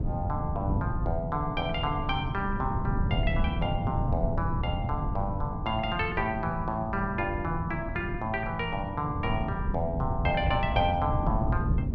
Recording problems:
wind on the microphone; below 150 Hz, SNR 2 dB

